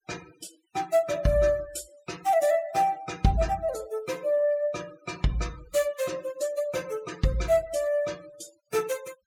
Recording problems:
denoising artefacts; signal-to-artefact ratio 21 dB

